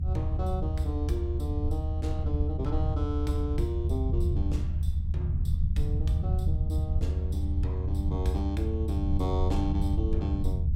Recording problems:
low-frequency rumble; below 80 Hz, strongest tone 78 Hz, SNR -6 dB

